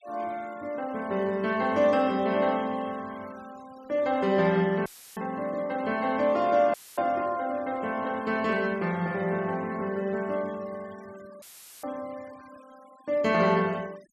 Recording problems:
noise reduction artefacts; signal-to-artefact ratio 25 dB
audio cutting out; at 5 s, at 6.5 s and at 11 s; filled with static

